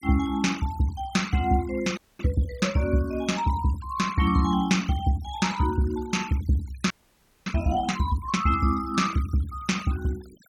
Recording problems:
denoising artefacts; signal-to-artefact ratio 20 dB
audio freezing; at 2 s and at 7 s for 0.5 s

